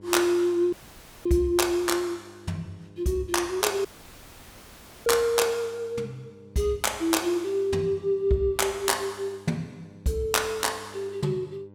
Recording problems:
hum; 50 Hz, harmonics up to 1.1 kHz, SNR 24 dB
dropout; at 0.5 s for 0.5 s and at 4 s for 1 s

